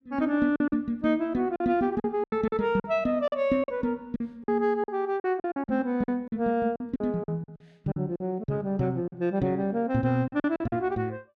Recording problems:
lost packets; 12% of the sound replaced, filled with silence

